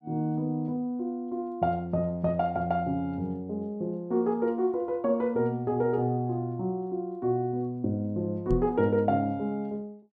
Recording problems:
microphone thump; at 8.5 s; peak +3 dB vs average level

